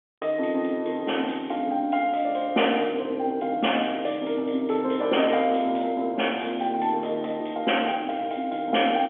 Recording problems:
telephone audio; 240 Hz to 3.3 kHz, G.711

